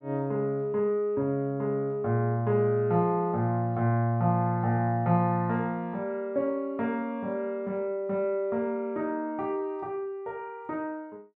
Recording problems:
none

